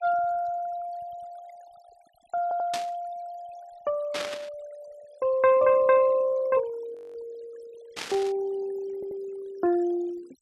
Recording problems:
denoising artefacts; signal-to-artefact ratio 23 dB
audio stuttering; at 2.5 s and at 9 s
static burst; at 2.5 s, at 4 s and at 8 s; peak -2 dB vs average level
frozen audio; at 7 s

